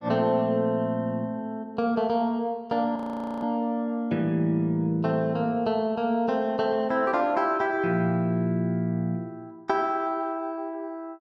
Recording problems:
frozen audio; at 3 s

